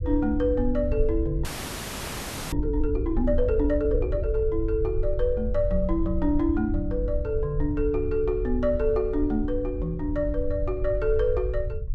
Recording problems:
low-frequency rumble; below 68 Hz, SNR 5 dB
audio freezing; at 1.5 s for 1 s

